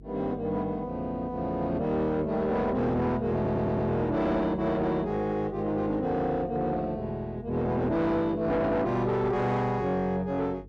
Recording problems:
distorted audio; soft clipping, signal-to-distortion ratio 10 dB
electrical hum; 50 Hz, harmonics up to 450 Hz, SNR 20 dB
audio stuttering; at 3.5 s

